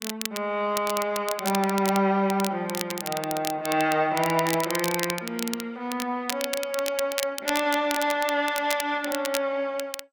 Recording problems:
lossy codec; MP2, log-spectral distance 2 dB
crackling; vinyl, SNR 7 dB

